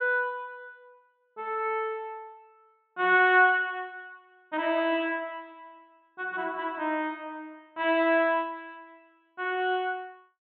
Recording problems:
low-pass filter; nothing above 4 kHz

